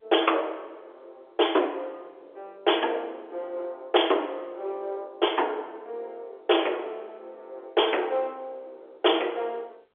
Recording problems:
phone line; 280 Hz to 3.5 kHz, G.711
distortion; hard clipping, signal-to-distortion ratio 12 dB

